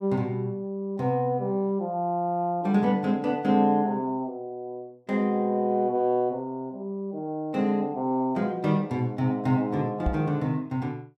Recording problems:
knock on the microphone; at 10 s; peak +2 dB vs average level

